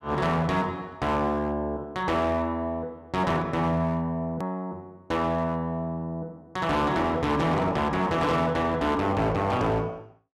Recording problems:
distorted audio; hard clipping, signal-to-distortion ratio 10 dB
click at an edit; at 4.5 s

